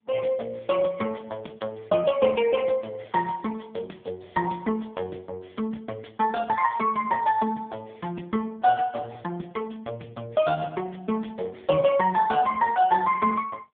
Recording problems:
phone line; 260 Hz to 3.3 kHz, AMR-NB

